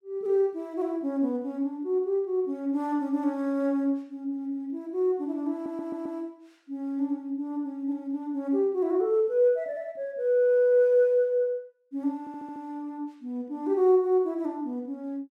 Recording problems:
audio stuttering; at 5.5 s and at 12 s

